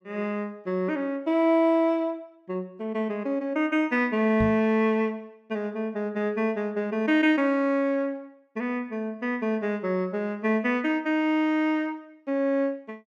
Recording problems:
knock on the microphone; at 4.5 s; peak 0 dB vs average level

